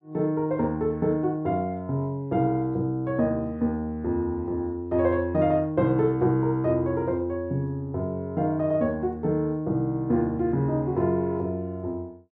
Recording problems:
none

